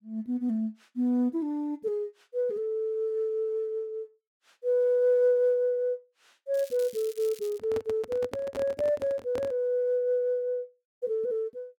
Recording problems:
crackle; from 6.5 to 7.5 s; loose cable, SNR 19 dB
handling noise; from 7.5 to 9.5 s; peak -4 dB vs average level

